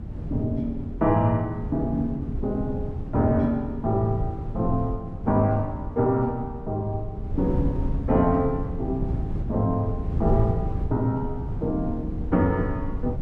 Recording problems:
wind noise; below 140 Hz, SNR 6 dB

